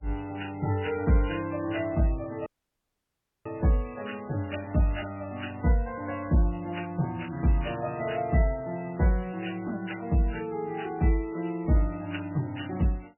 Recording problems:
lossy codec; MP3, log-spectral distance 6 dB, nothing above 2.4 kHz
dropout; at 2.5 s for 1 s

